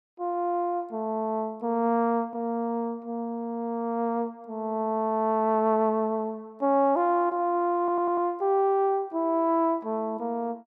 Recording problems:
audio stuttering; at 8 s

